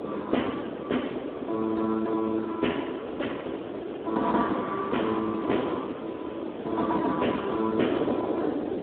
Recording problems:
phone line; 240 Hz to 3.4 kHz, Speex
background hiss; SNR 20 dB
wind on the microphone; below 530 Hz, SNR 4 dB

